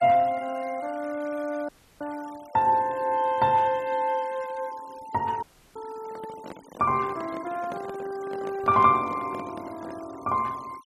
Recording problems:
denoising artefacts; signal-to-artefact ratio 23 dB
audio cutting out; at 1.5 s and at 5.5 s
microphone handling noise; from 6 to 10 s; peak -8 dB vs average level

